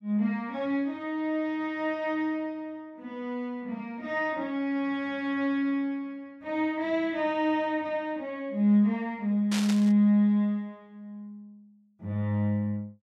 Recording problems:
burst of static; at 9.5 s; peak -1 dB vs average level

